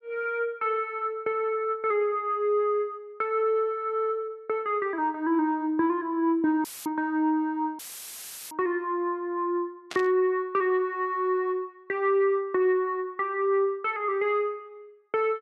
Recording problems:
dropout; at 6.5 s and at 8 s for 0.5 s; filled with static
burst of static; at 10 s; peak -5 dB vs average level

